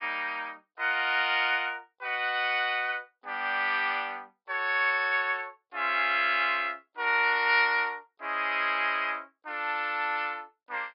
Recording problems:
low-pass filter; nothing above 5.5 kHz

